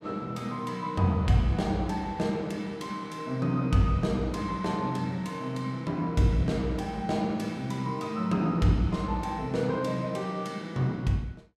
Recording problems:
none

